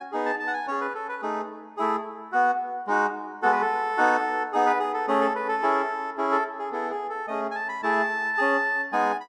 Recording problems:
none

